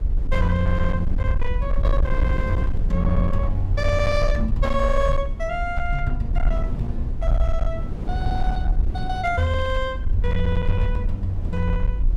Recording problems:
distorted audio; hard clipping, uneven, signal-to-distortion ratio 10 dB
rumble; below 54 Hz, SNR 1 dB
wind noise; below 180 Hz, SNR 7 dB

